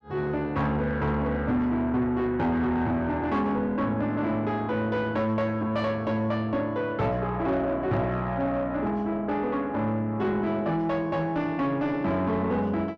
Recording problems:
distorted audio; soft clipping, signal-to-distortion ratio 11 dB

